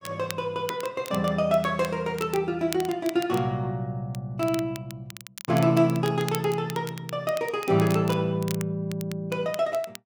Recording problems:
crackle; vinyl, SNR 15 dB

